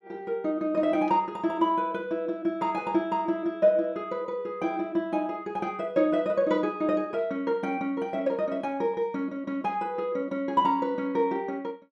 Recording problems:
none

